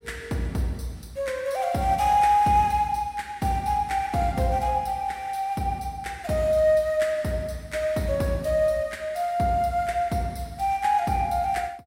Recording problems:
none

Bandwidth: 16 kHz